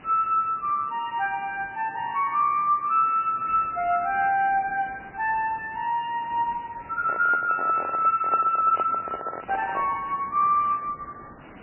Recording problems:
lossy codec; MP3, log-spectral distance 6 dB, nothing above 2.4 kHz
background hiss; SNR 23 dB
microphone handling noise; from 7 to 10 s; peak -4 dB vs average level

